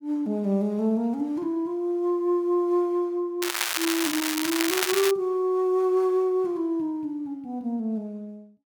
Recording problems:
crackling; from 3.5 to 5 s; loose cable, SNR 1 dB

